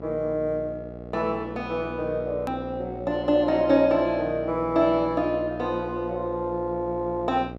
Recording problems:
mains hum; 60 Hz, harmonics up to 1.4 kHz, SNR 12 dB
hard cut with a click; at 2.5 s

